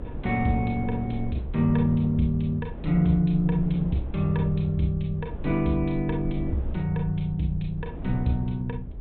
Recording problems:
low-pass filter; nothing above 4 kHz
low-frequency rumble; below 72 Hz, SNR 13 dB
wind noise; below 270 Hz, SNR 14 dB

